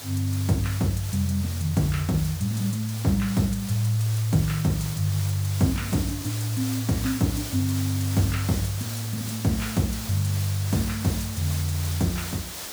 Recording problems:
hiss; slope -1 dB per octave, SNR 9 dB

